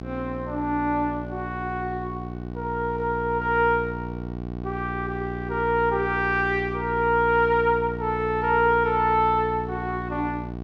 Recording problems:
hum; 60 Hz, harmonics up to 1.2 kHz, SNR 9 dB

